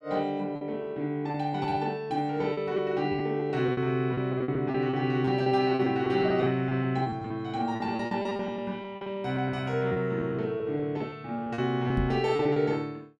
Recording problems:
packet loss; 12% of the sound replaced, filled with repeated pitch periods
microphone bump; at 12 s; peak 0 dB vs average level

